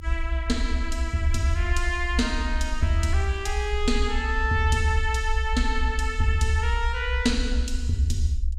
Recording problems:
rumble; below 66 Hz, SNR 2 dB

